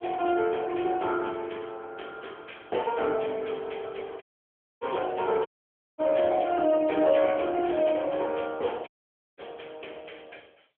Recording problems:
telephone audio; 280 Hz to 3.3 kHz, AMR-NB
dropout; at 4 s for 0.5 s, at 5.5 s for 0.5 s and at 9 s

